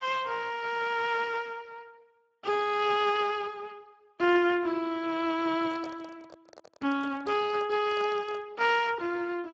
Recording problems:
codec artefacts; Speex, log-spectral distance 4 dB
microphone handling noise; from 5.5 to 8.5 s; peak -11 dB vs average level

